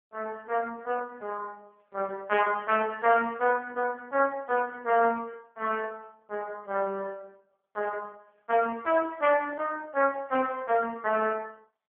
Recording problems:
phone line; 300 Hz to 2.8 kHz, AMR-NB

